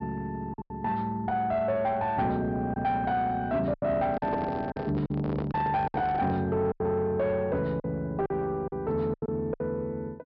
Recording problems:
treble cut off; nothing above 5.5 kHz
distorted audio; soft clipping, signal-to-distortion ratio 11 dB
lost packets; 8% of the sound replaced, filled with silence
handling noise; from 4 to 6.5 s; peak +1 dB vs average level

